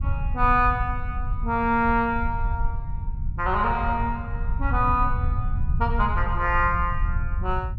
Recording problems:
rumble; below 82 Hz, SNR 4 dB

